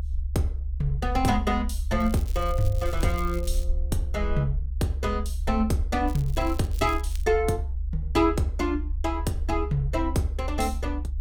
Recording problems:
low-frequency rumble; below 68 Hz, SNR 3 dB
crackle; from 2 to 3.5 s and from 6 to 7 s; loose cable, SNR 19 dB

